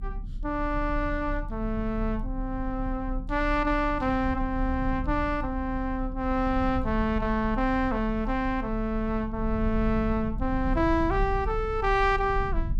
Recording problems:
rumble; below 70 Hz, strongest tone 34 Hz, SNR 7 dB

